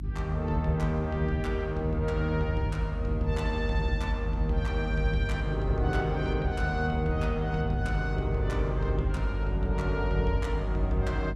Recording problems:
hum; 50 Hz, harmonics up to 300 Hz, SNR 5 dB

